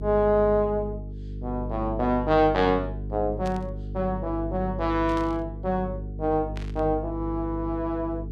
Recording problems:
mains hum; 50 Hz, harmonics up to 450 Hz, SNR 8 dB
burst of static; at 3.5 s, at 5 s and at 6.5 s; peak -11 dB vs average level

